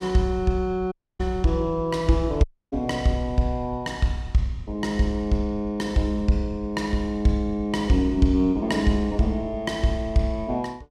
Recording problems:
dropout; at 1 s and at 2.5 s

